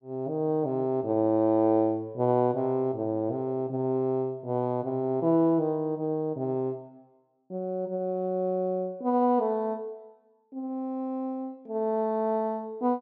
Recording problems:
low-pass filter; nothing above 8 kHz

